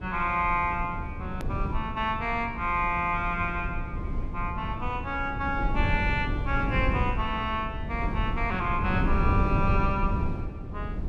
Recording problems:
low-frequency rumble; below 150 Hz, SNR 3 dB
edit click; at 1.5 s

